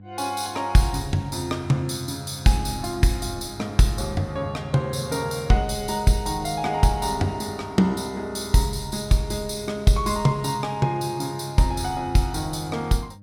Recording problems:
hum; 50 Hz, harmonics up to 500 Hz, SNR 22 dB

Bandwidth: 16.5 kHz